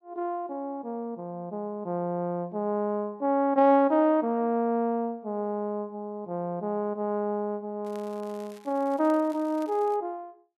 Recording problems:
crackling; from 8 to 10 s; loose cable, SNR 27 dB

